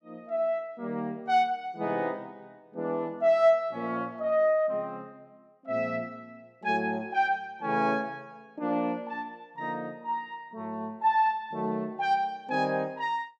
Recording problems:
none

